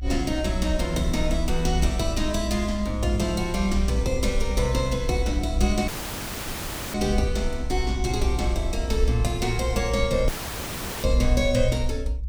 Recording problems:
rumble; below 62 Hz, SNR 3 dB
audio cutting out; at 6 s for 1 s and at 10 s for 1 s

